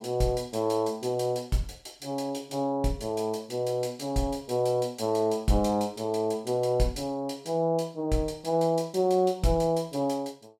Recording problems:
none

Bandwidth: 16 kHz